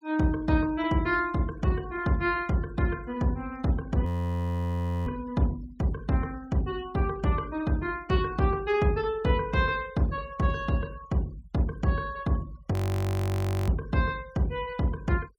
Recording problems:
denoising artefacts; signal-to-artefact ratio 24 dB
audio freezing; at 4 s for 1 s and at 13 s for 1 s

